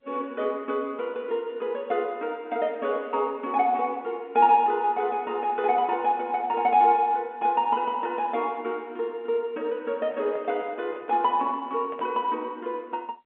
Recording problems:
phone line; 170 Hz to 3.3 kHz, G.711
handling noise; from 10 to 12 s; peak -10 dB vs average level

